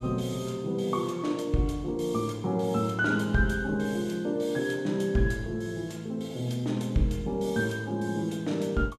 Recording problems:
none

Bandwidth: 14 kHz